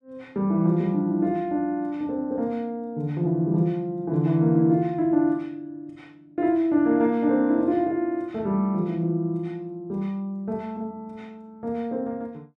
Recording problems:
none

